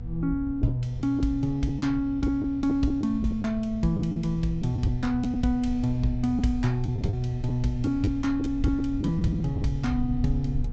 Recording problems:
treble missing; nothing above 8 kHz
hum; 60 Hz, harmonics up to 720 Hz, SNR 15 dB
wind noise; below 76 Hz, SNR 11 dB
packet loss; 6% of the sound replaced, filled with the last packet

